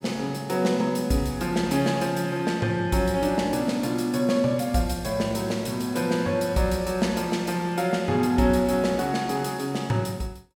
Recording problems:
none

